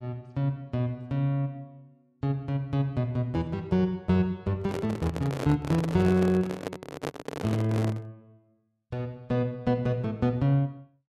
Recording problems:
microphone handling noise; from 4.5 to 8 s; peak -1 dB vs average level

